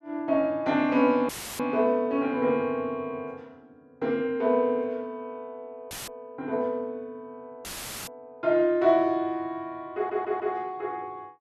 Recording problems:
dropout; at 1.5 s, at 6 s and at 7.5 s; filled with static
audio stuttering; at 10 s

